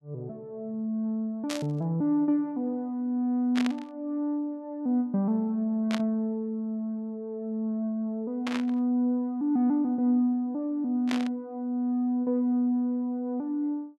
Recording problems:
burst of static; 5 times, first at 1.5 s; peak -1 dB vs average level

